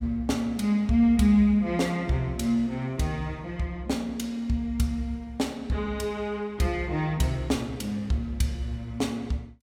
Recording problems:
none

